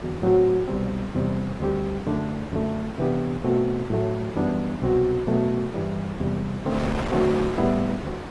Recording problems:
lossy compression; AAC, log-spectral distance 2 dB
wind noise; below 1.1 kHz, SNR 10 dB

